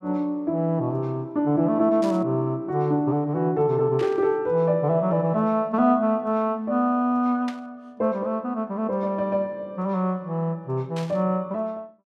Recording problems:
burst of static; 4 times, first at 2 s; peak -10 dB vs average level

